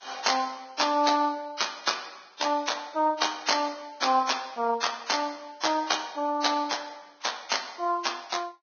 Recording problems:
lossy codec; Vorbis, log-spectral distance 6 dB, nothing above 6.5 kHz

